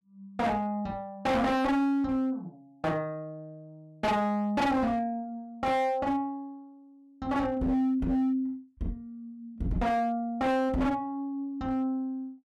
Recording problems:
distorted audio; hard clipping, signal-to-distortion ratio 7 dB

